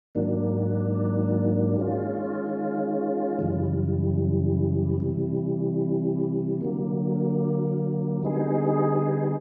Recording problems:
none

